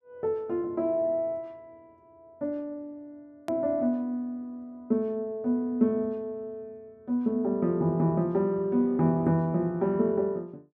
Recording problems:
click at an edit; at 3.5 s

